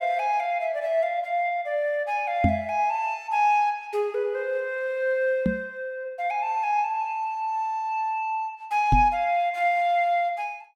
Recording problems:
microphone bump; at 2.5 s, at 5.5 s and at 9 s; peak +6 dB vs average level

